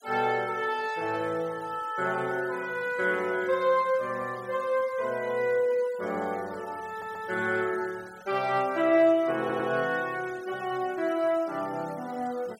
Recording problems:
noise reduction artefacts; signal-to-artefact ratio 22 dB
stutter; at 7 s and at 9.5 s

